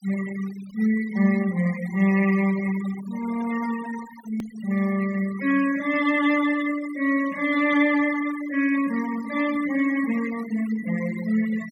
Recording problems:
denoising artefacts; signal-to-artefact ratio 15 dB
click at an edit; at 4.5 s

